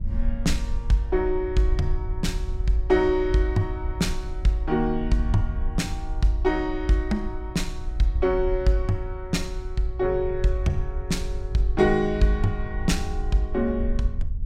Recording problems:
wind on the microphone; below 60 Hz, SNR 7 dB

